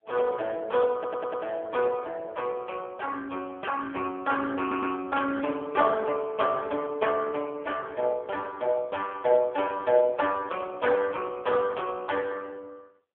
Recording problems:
telephone audio; 300 Hz to 2.7 kHz, AMR-NB
stutter; at 1 s and at 4.5 s

